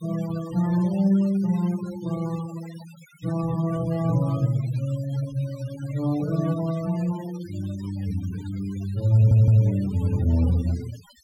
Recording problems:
denoising artefacts; signal-to-artefact ratio 20 dB
audio stuttering; at 9 s

